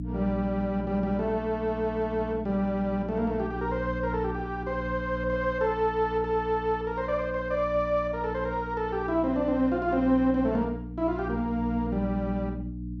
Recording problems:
hum; 60 Hz, harmonics up to 300 Hz, SNR 8 dB

